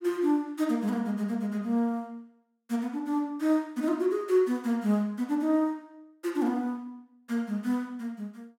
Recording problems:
none

